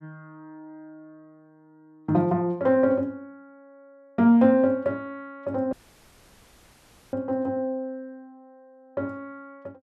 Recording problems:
audio cutting out; at 5.5 s for 1.5 s

